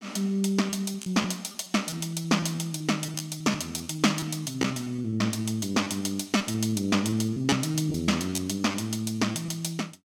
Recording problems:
packet loss; 12% of the sound replaced, filled with repeated pitch periods

